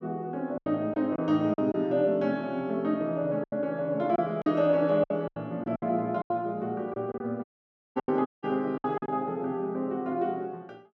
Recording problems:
packet loss; 9% of the sound replaced, filled with silence
audio cutting out; at 7.5 s for 0.5 s and at 8.5 s

